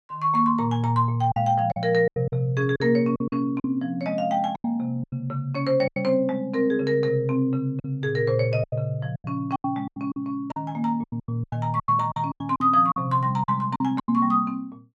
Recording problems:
packet loss; 12% of the sound replaced, filled with silence

